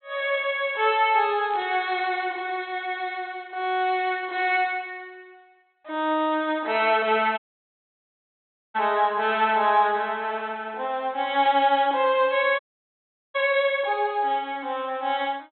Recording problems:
treble cut off; nothing above 4.1 kHz
burst of static; at 1.5 s and at 11 s; peak -14 dB vs average level
audio cutting out; at 7.5 s for 1.5 s and at 13 s for 1 s

